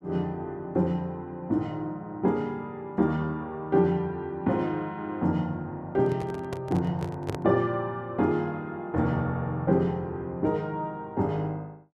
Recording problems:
handling noise; from 6 to 7.5 s; peak -1 dB vs average level

